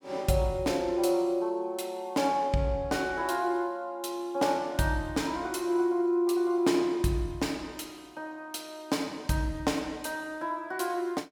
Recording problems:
none

